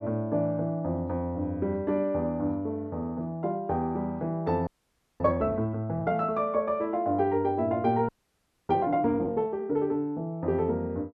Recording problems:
frozen audio; at 4.5 s for 0.5 s and at 8 s for 0.5 s

